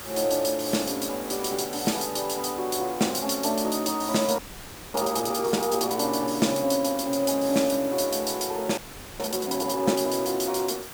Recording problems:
hiss; SNR 13 dB
frozen audio; at 4.5 s for 0.5 s and at 9 s

